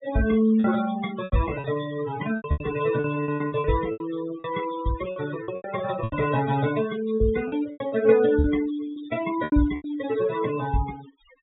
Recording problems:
treble missing; nothing above 4 kHz
denoising artefacts; signal-to-artefact ratio 13 dB
lost packets; 12% of the sound replaced, filled with repeated pitch periods

